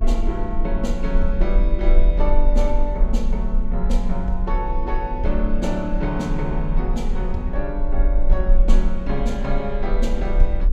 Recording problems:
hum; 50 Hz, harmonics up to 500 Hz, SNR 11 dB
rumble; below 38 Hz, strongest tone 22 Hz, SNR -2 dB

